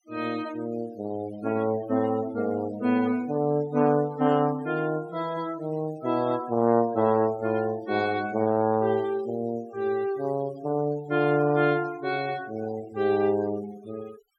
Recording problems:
denoising artefacts; signal-to-artefact ratio 21 dB

